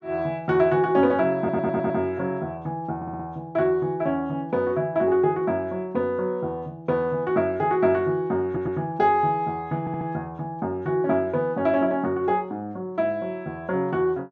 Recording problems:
stutter; 4 times, first at 1.5 s

